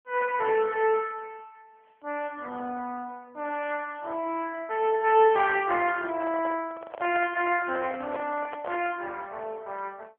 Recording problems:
telephone audio; 220 Hz to 3.1 kHz, AMR-NB
microphone handling noise; from 6 to 9 s; peak -5 dB vs average level

